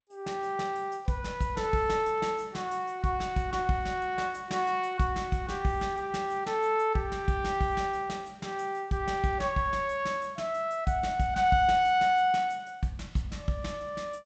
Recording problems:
codec artefacts; G.722, log-spectral distance 2 dB, nothing above 7.8 kHz

